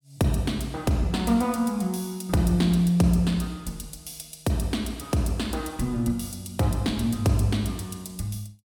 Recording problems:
none

